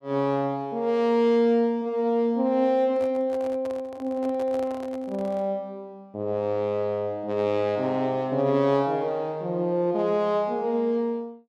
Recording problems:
microphone handling noise; from 3 to 5.5 s; peak -11 dB vs average level

